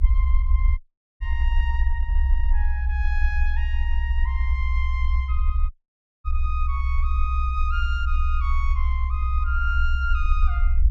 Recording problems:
low-frequency rumble; below 66 Hz, strongest tone 24 Hz, SNR -8 dB
audio cutting out; at 1 s and at 5.5 s for 0.5 s

